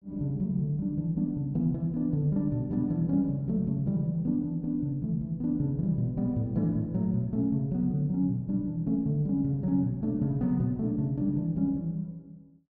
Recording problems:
none

